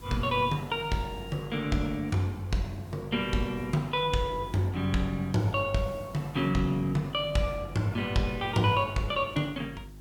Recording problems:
hum; 50 Hz, harmonics up to 400 Hz, SNR 20 dB
background hiss; slope -2 dB per octave, SNR 28 dB

